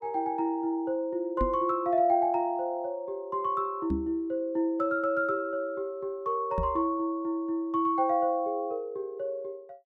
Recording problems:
knock on the microphone; at 1.5 s, at 4 s and at 6.5 s; peak +1 dB vs average level

